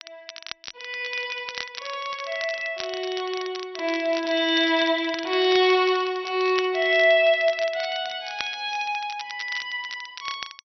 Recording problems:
treble missing; nothing above 5.8 kHz
crackling; vinyl, SNR 14 dB

